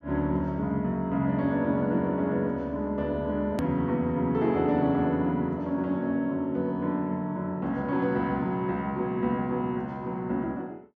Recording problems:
edit click; at 3.5 s

